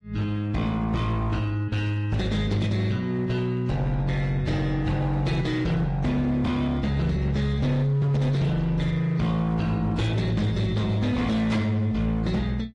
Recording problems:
lossy compression; AAC, then MP3, log-spectral distance 2 dB, nothing above 11 kHz
distorted audio; hard clipping, signal-to-distortion ratio 10 dB

